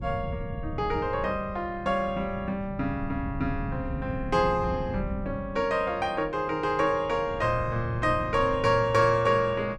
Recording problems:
wind on the microphone; below 170 Hz, SNR 11 dB

